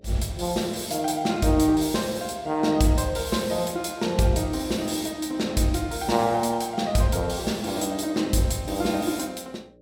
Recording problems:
hum; 60 Hz, harmonics up to 600 Hz, SNR 28 dB

